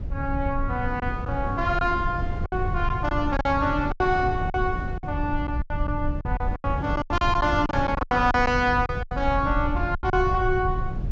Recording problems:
low-pass filter; nothing above 8 kHz
rumble; below 96 Hz, SNR 6 dB
wind on the microphone; below 400 Hz, SNR 13 dB
packet loss; 11% of the sound replaced, filled with silence

